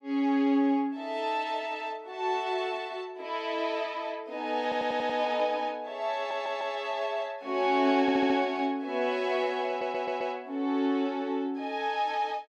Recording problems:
stutter; 4 times, first at 4.5 s

